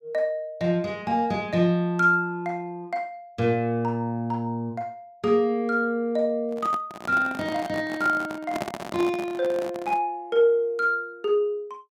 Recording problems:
microphone handling noise; from 6.5 to 10 s; peak -1 dB vs average level

